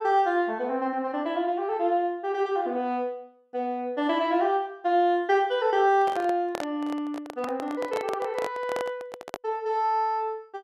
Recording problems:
microphone handling noise; from 6 to 9.5 s; peak -2 dB vs average level

